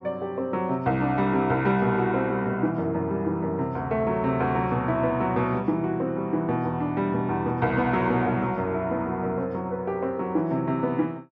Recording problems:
none

